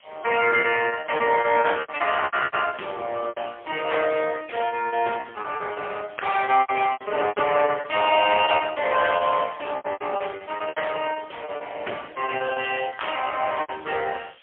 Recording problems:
telephone audio; 320 Hz to 3.3 kHz, AMR-NB, then MP3
hiss; SNR 29 dB
lost packets; 15% of the sound replaced, filled with repeated pitch periods

